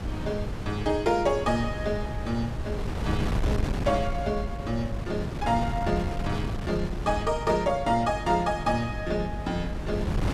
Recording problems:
hum; 50 Hz, harmonics up to 450 Hz, SNR 12 dB
wind noise; below 230 Hz, SNR 5 dB

